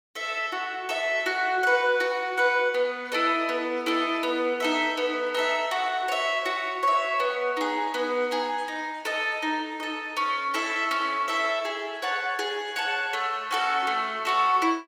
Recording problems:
none

